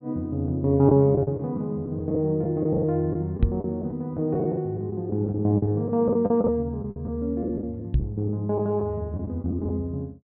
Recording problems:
treble cut off; nothing above 4.3 kHz
lost packets; 9% of the sound replaced, filled with the last packet
microphone bump; at 3.5 s and at 8 s; peak +8 dB vs average level

